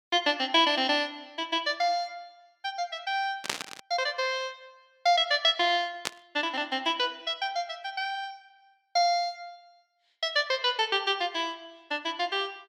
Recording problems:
burst of static; at 3.5 s and at 6 s; peak +3 dB vs average level

